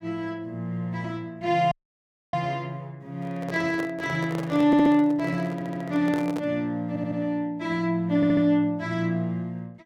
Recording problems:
dropout; at 1.5 s for 0.5 s
microphone handling noise; from 3 to 6.5 s; peak -5 dB vs average level
stutter; 4 times, first at 4.5 s

